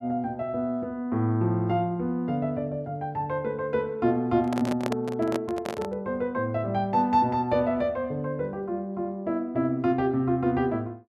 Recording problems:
microphone handling noise; from 4.5 to 6 s; peak +1 dB vs average level

